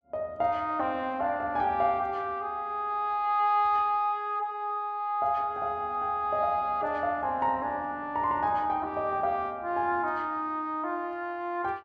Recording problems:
none

